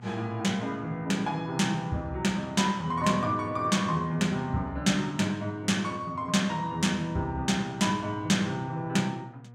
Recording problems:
electrical hum; 60 Hz, harmonics up to 1.4 kHz, SNR 21 dB

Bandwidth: 16.5 kHz